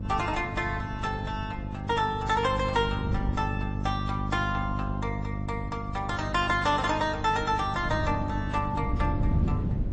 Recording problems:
codec artefacts; MP3, then AAC, log-spectral distance 2 dB, nothing above 8.2 kHz
hum; 50 Hz, harmonics up to 600 Hz, SNR 5 dB
wind noise; below 160 Hz, SNR 7 dB

